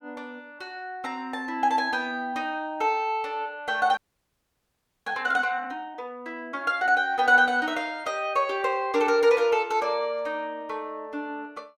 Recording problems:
audio freezing; at 4 s for 1 s

